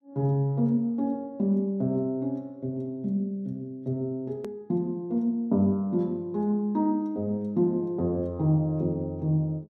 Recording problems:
edit click; at 4.5 s

